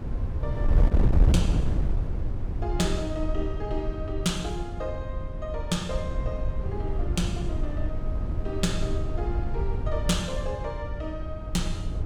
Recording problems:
hum; 50 Hz, harmonics up to 300 Hz, SNR 22 dB
wind on the microphone; below 90 Hz, SNR -3 dB

